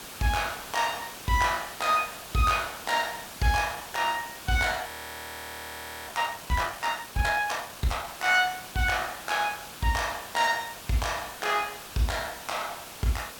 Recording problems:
hiss; slope -2 dB per octave, SNR 12 dB
audio freezing; at 5 s for 1 s

